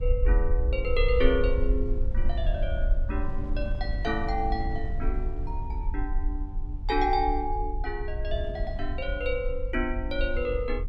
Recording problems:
low-frequency rumble; below 52 Hz, SNR 1 dB
wind noise; below 180 Hz, SNR 11 dB

